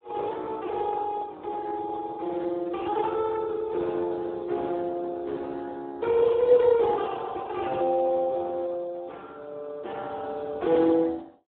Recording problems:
telephone audio; 280 Hz to 3.7 kHz, Speex

